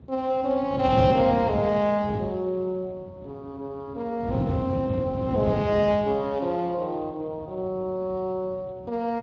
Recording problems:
lossy codec; Speex, log-spectral distance 2 dB
wind on the microphone; below 270 Hz, SNR 5 dB

